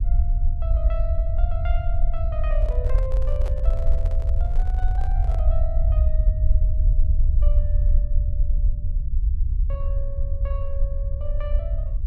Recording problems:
low-frequency rumble; below 60 Hz, SNR -13 dB
microphone handling noise; from 2.5 to 5.5 s; peak +3 dB vs average level

